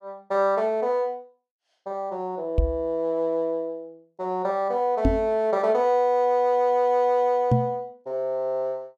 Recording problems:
knock on the microphone; at 2.5 s, at 5 s and at 7.5 s; peak +6 dB vs average level

